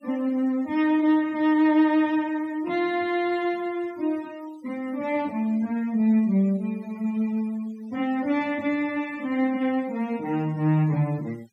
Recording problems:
denoising artefacts; signal-to-artefact ratio 25 dB

